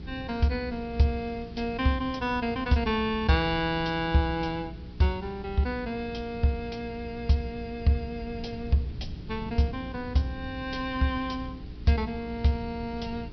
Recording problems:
treble cut off; nothing above 5.5 kHz
mains hum; 60 Hz, harmonics up to 420 Hz, SNR 15 dB
background hiss; SNR 27 dB
wind noise; below 150 Hz, SNR 15 dB

